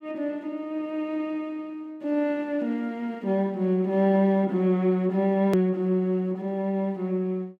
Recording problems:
click at an edit; at 5.5 s

